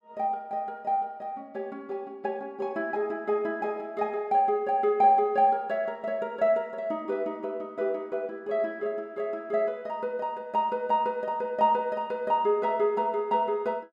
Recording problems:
none

